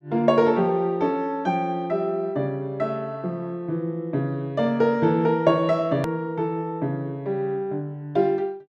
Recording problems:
edit click; at 6 s

